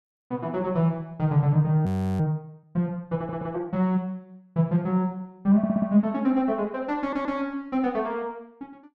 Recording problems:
frozen audio; at 2 s
stutter; at 3 s, at 5.5 s and at 7 s

